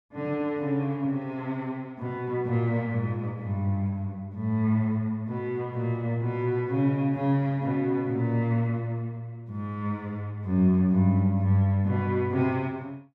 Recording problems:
none

